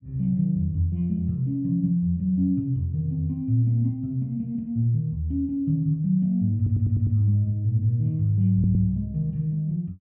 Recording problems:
stutter; at 6.5 s and at 8.5 s

